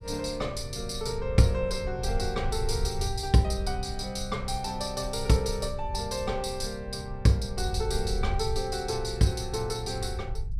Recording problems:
low-frequency rumble; below 82 Hz, SNR 8 dB

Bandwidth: 14.5 kHz